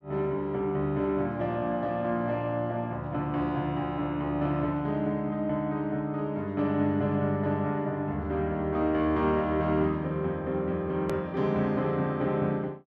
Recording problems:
click at an edit; at 11 s

